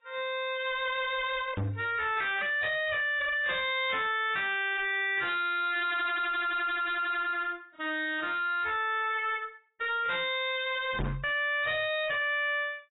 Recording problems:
lossy codec; AAC, log-spectral distance 5 dB, nothing above 3.2 kHz
distorted audio; hard clipping, uneven, signal-to-distortion ratio 6 dB
microphone thump; at 1.5 s and at 11 s; peak -1 dB vs average level

